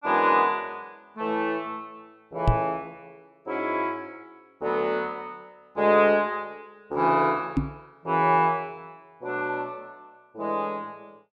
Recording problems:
microphone thump; at 2.5 s and at 7.5 s; peak +7 dB vs average level

